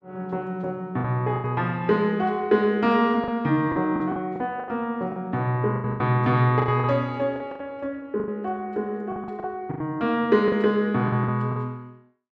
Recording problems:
packet loss; 11% of the sound replaced, filled with the last packet

